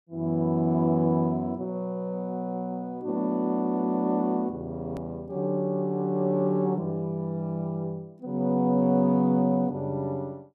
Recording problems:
edit click; at 5 s

